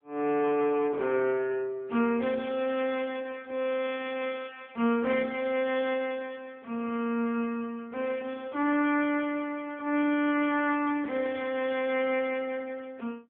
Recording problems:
phone line; 150 Hz to 3.4 kHz, AMR-NB

